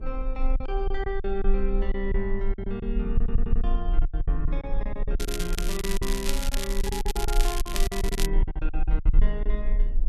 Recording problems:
low-frequency rumble; below 38 Hz, strongest tone 22 Hz, SNR -4 dB
wind noise; below 270 Hz, SNR 13 dB
lost packets; 14% of the sound replaced, filled with silence
audio stuttering; at 3 s
crackling; from 5 to 8.5 s; loose cable, SNR 1 dB

